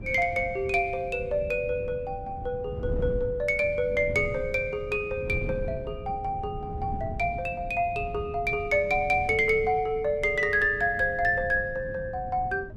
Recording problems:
wind noise; below 170 Hz, SNR 12 dB

